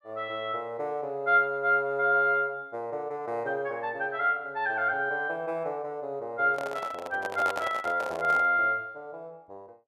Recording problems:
microphone handling noise; from 6.5 to 8.5 s; peak -1 dB vs average level

